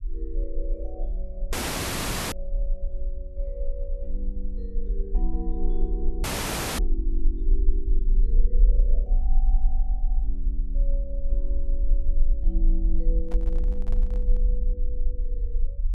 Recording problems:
low-frequency rumble; below 38 Hz, strongest tone 26 Hz, SNR -13 dB
dropout; at 1.5 s for 1 s and at 6 s for 0.5 s
handling noise; from 13 to 14 s; peak 0 dB vs average level

